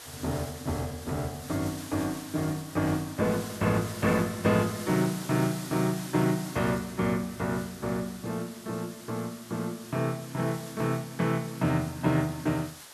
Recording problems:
background hiss; slope 0 dB per octave, SNR 13 dB

